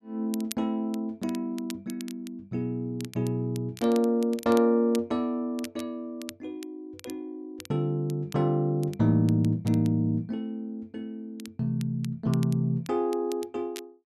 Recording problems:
crackling; vinyl, SNR 19 dB

